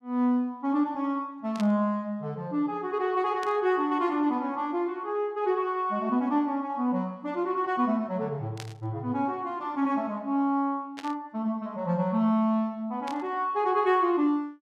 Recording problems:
static burst; 5 times, first at 1.5 s; peak -8 dB vs average level

